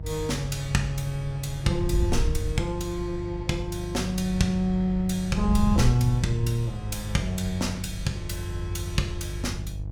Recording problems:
mains hum; 50 Hz, harmonics up to 500 Hz, SNR 9 dB
wind on the microphone; below 96 Hz, SNR 7 dB

